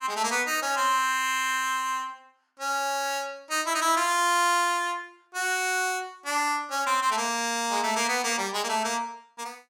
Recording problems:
none

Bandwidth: 17 kHz